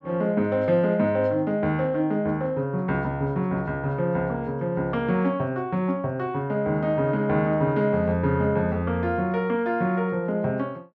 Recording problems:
none

